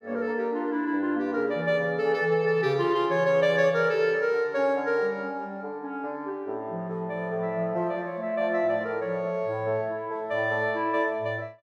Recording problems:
none

